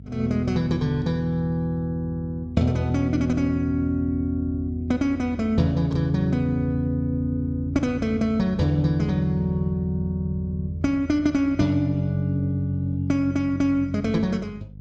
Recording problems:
hum; 50 Hz, harmonics up to 300 Hz, SNR 18 dB

